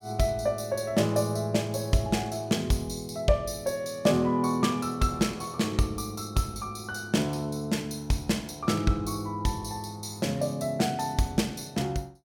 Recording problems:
none

